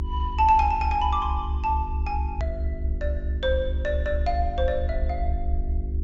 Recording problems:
low-pass filter; nothing above 8 kHz
hum; 50 Hz, harmonics up to 400 Hz, SNR 12 dB
rumble; below 70 Hz, strongest tone 66 Hz, SNR 3 dB
click at an edit; at 2.5 s

